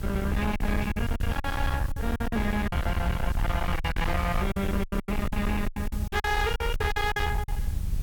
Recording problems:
distortion; hard clipping, signal-to-distortion ratio 9 dB
background hiss; slope -2 dB per octave, SNR 17 dB
low-frequency rumble; below 78 Hz, SNR 4 dB
wind on the microphone; below 90 Hz, SNR 3 dB
packet loss; 14% of the sound replaced, filled with silence

